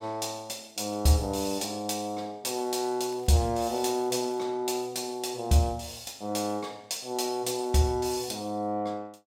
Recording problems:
crackle; from 3 to 4.5 s; loose cable, SNR 29 dB

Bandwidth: 16.5 kHz